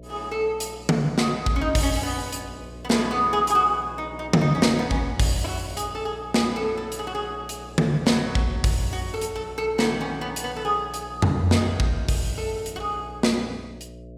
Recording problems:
mains hum; 60 Hz, harmonics up to 660 Hz, SNR 18 dB

